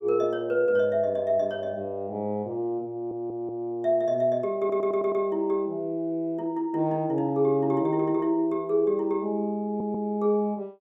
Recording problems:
audio stuttering; at 3 s, at 4.5 s and at 9.5 s

